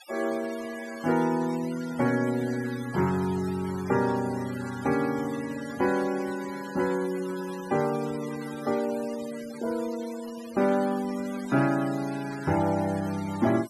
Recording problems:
noise reduction artefacts; signal-to-artefact ratio 16 dB

